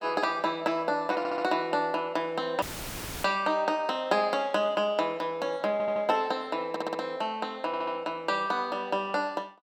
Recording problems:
stutter; 4 times, first at 1 s
audio cutting out; at 2.5 s for 0.5 s; filled with static

